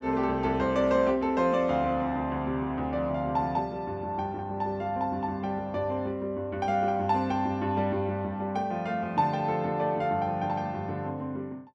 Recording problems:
none

